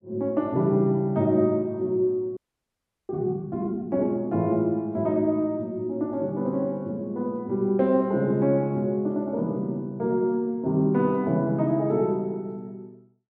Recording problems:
frozen audio; at 2.5 s for 0.5 s

